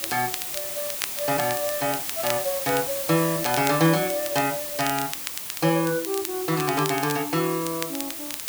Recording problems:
background hiss; slope 0 dB per octave, SNR 4 dB
crackle; vinyl, SNR 10 dB

